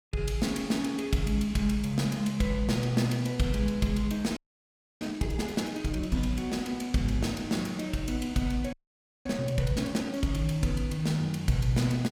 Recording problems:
audio freezing; at 4.5 s for 0.5 s and at 8.5 s for 0.5 s

